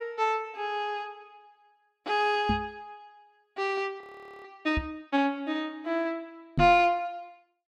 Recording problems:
microphone bump; at 2.5 s, at 5 s and at 6.5 s; peak +4 dB vs average level
audio freezing; at 4 s

